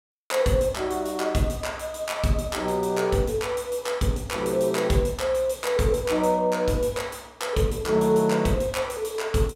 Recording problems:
none

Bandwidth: 16 kHz